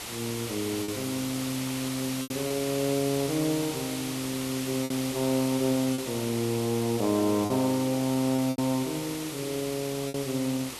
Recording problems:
hiss; slope -1 dB per octave, SNR 7 dB
packet loss; 4% of the sound replaced, filled with repeated pitch periods

